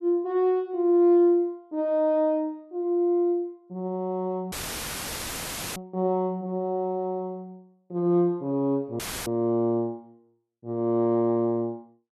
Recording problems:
audio cutting out; at 4.5 s for 1 s and at 9 s; filled with static

